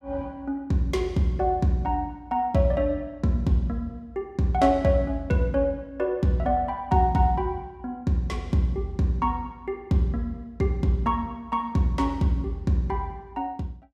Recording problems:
none

